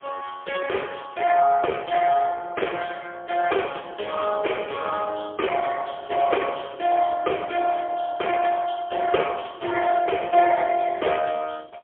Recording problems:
telephone audio; 340 Hz to 3.3 kHz, AMR-NB, then MP3

